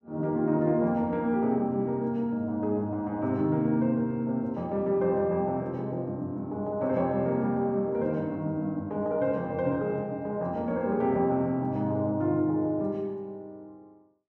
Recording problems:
none

